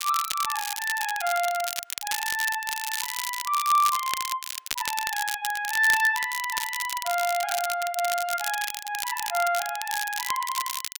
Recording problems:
crackling; vinyl, SNR 5 dB

